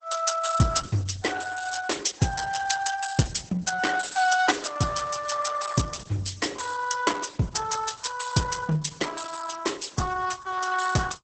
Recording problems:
lossy codec; Opus, then Opus, log-spectral distance 7 dB, nothing above 8.2 kHz

